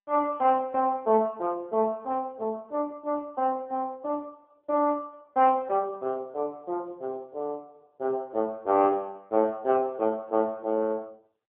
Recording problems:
telephone audio; 240 Hz to 3.6 kHz, AMR-NB

